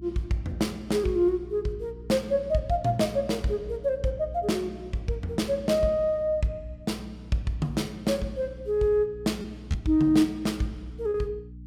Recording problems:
hum; 60 Hz, harmonics up to 300 Hz, SNR 17 dB
packet loss; 0.7% of the sound replaced, filled with repeated pitch periods

